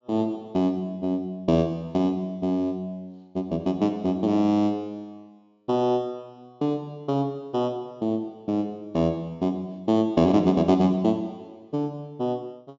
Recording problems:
low-pass filter; nothing above 7.3 kHz

